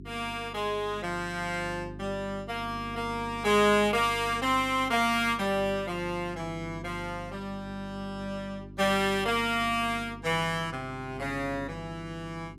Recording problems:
hum; 50 Hz, harmonics up to 400 Hz, SNR 15 dB

